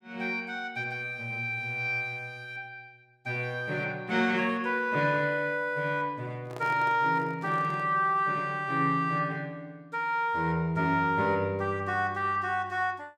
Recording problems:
microphone handling noise; from 6.5 to 8 s; peak -9 dB vs average level

